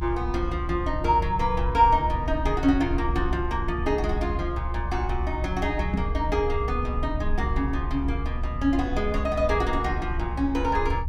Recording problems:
low-frequency rumble; below 68 Hz, SNR 4 dB
knock on the microphone; at 6 s; peak +4 dB vs average level

